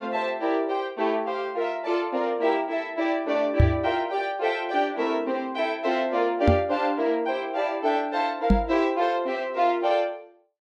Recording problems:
knock on the microphone; at 3.5 s, at 6.5 s and at 8.5 s; peak +9 dB vs average level

